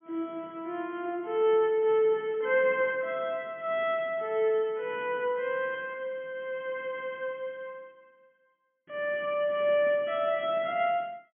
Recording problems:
treble missing; nothing above 3.3 kHz

